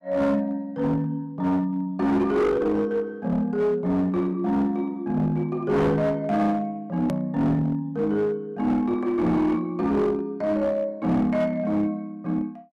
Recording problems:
distortion; hard clipping, uneven, signal-to-distortion ratio 10 dB
hard cut with a click; at 7 s

